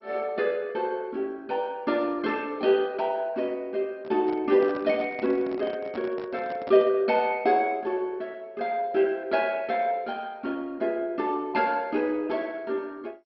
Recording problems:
codec artefacts; MP2, log-spectral distance 2 dB, nothing above 4.6 kHz
handling noise; from 4 to 7 s; peak -8 dB vs average level

